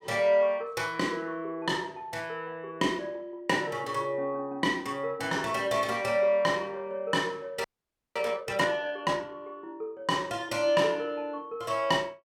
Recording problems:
frozen audio; at 7.5 s for 0.5 s

